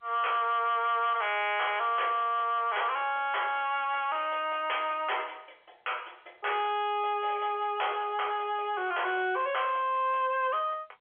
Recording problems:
telephone audio; 320 Hz to 3.4 kHz, G.711
distortion; soft clipping, signal-to-distortion ratio 10 dB

